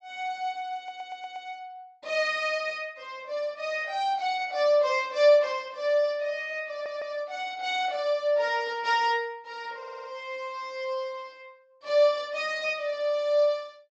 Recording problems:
low-pass filter; nothing above 8 kHz
audio stuttering; at 1 s, at 6.5 s and at 10 s

